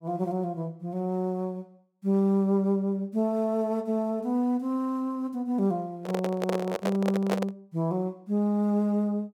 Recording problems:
microphone handling noise; from 6 to 7.5 s; peak +3 dB vs average level

